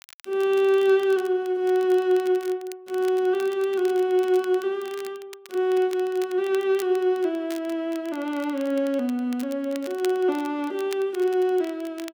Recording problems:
crackle; vinyl, SNR 22 dB

